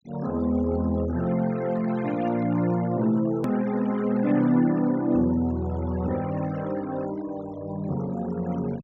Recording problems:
low-pass filter; nothing above 8 kHz
noise reduction artefacts; signal-to-artefact ratio 18 dB
edit click; at 3.5 s

